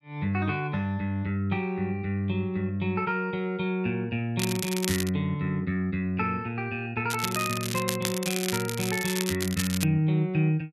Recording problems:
crackling; at 4.5 s and from 7 to 10 s; loose cable, SNR 4 dB

